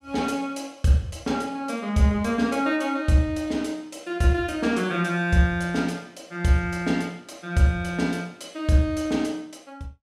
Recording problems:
none

